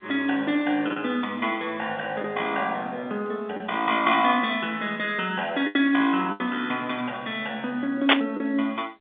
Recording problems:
phone line; 340 Hz to 3.6 kHz, G.711
packet loss; 3% of the sound replaced, filled with the last packet
static burst; at 8 s; peak +12 dB vs average level

